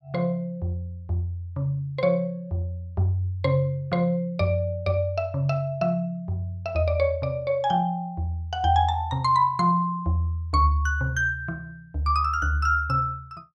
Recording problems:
none

